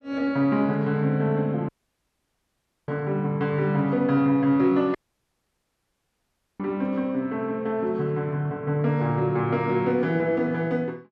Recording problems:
dropout; at 1.5 s for 1 s and at 5 s for 1.5 s

